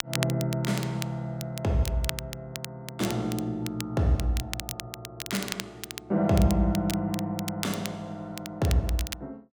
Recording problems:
crackle; vinyl, SNR 9 dB

